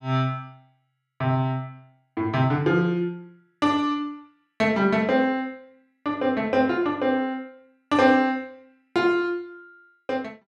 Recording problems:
none

